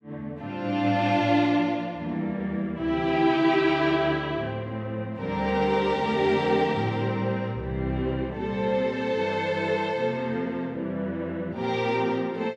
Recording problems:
none

